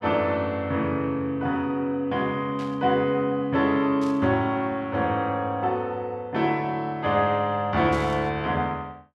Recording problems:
static burst; at 2.5 s, at 4 s and at 8 s; peak -14 dB vs average level

